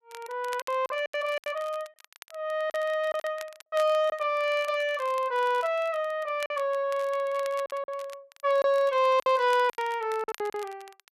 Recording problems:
crackling; vinyl, SNR 21 dB
lost packets; 8% of the sound replaced, filled with silence

